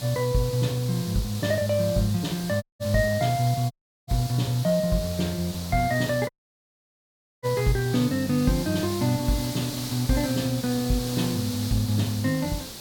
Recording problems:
background hiss; SNR 10 dB
audio cutting out; at 2.5 s, at 3.5 s and at 6.5 s for 1 s

